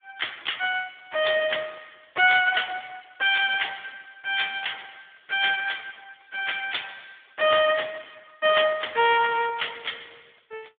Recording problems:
telephone audio; 340 Hz to 3.6 kHz, Speex

